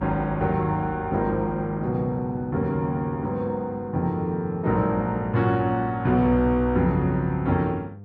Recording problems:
hum; 50 Hz, harmonics up to 700 Hz, SNR 18 dB

